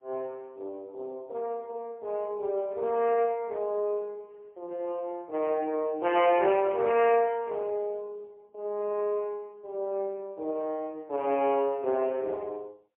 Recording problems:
phone line; 280 Hz to 3.1 kHz, AMR-NB, then MP3

